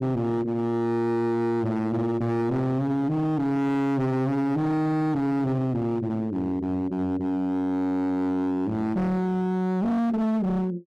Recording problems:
distortion; hard clipping, signal-to-distortion ratio 6 dB

